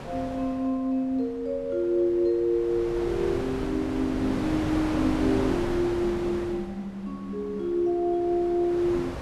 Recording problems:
wind noise; below 820 Hz, SNR 7 dB

